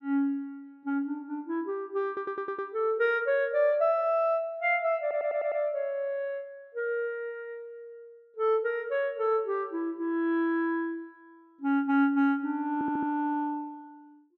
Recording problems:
audio stuttering; at 2 s, at 5 s and at 13 s

